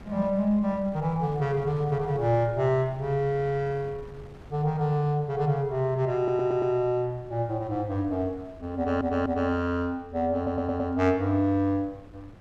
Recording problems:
wind noise; below 390 Hz, SNR 21 dB
stutter; at 6 s, at 9 s and at 10 s

